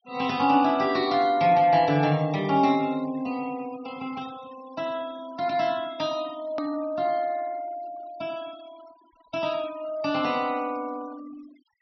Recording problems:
treble missing; nothing above 5.8 kHz
denoising artefacts; signal-to-artefact ratio 23 dB
edit click; at 6.5 s

